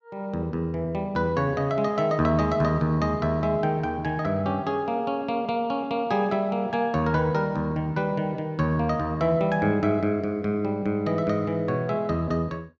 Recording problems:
none

